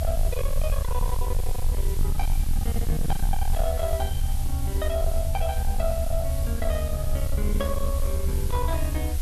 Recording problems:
distortion; soft clipping, signal-to-distortion ratio 8 dB
background hiss; SNR 9 dB
rumble; below 68 Hz, strongest tone 24 Hz, SNR -3 dB

